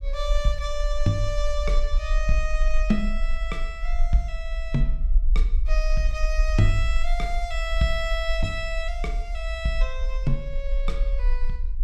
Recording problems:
rumble; below 42 Hz, strongest tone 22 Hz, SNR -1 dB

